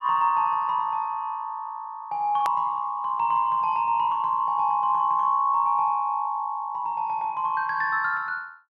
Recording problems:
click at an edit; at 2.5 s

